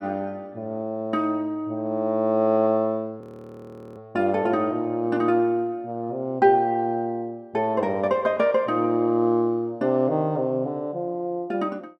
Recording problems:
audio freezing; at 3 s for 1 s

